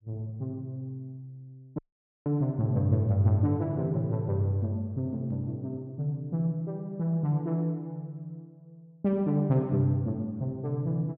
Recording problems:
dropout; at 2 s

